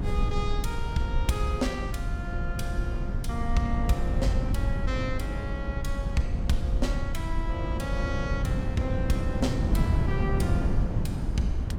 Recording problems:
rumble; below 50 Hz, SNR 2 dB
wind noise; below 170 Hz, SNR -2 dB

